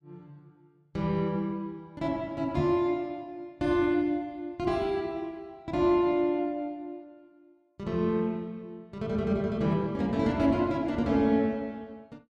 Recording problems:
knock on the microphone; at 2.5 s; peak +1 dB vs average level

